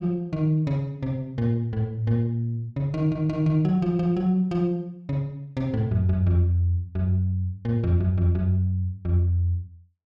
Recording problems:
none

